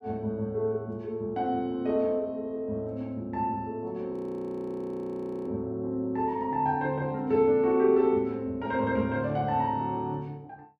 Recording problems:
audio freezing; at 4 s for 1.5 s

